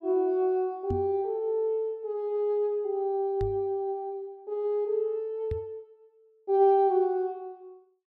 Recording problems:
knock on the microphone; at 1 s, at 3.5 s and at 5.5 s; peak -2 dB vs average level

